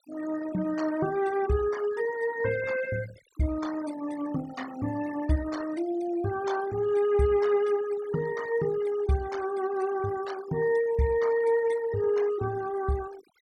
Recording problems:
noise reduction artefacts; signal-to-artefact ratio 17 dB

